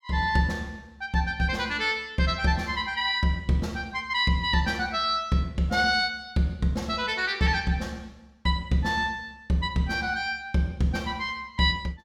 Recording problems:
none

